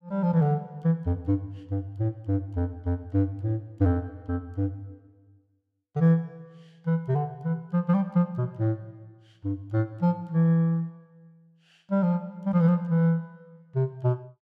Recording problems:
none

